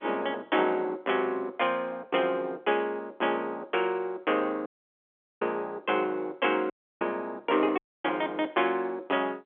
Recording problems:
telephone audio; 260 Hz to 3.4 kHz, G.711
dropout; at 4.5 s for 1 s, at 6.5 s and at 8 s

